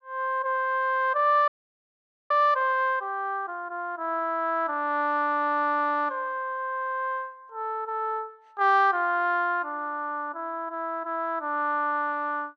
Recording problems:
frozen audio; at 1.5 s for 1 s

